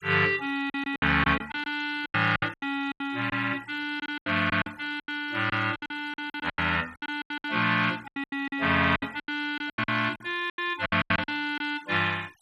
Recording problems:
denoising artefacts; signal-to-artefact ratio 22 dB
packet loss; 17% of the sound replaced, filled with silence

